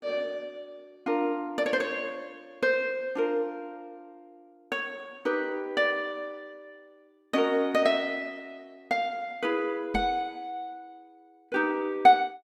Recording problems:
microphone thump; at 10 s; peak -1 dB vs average level

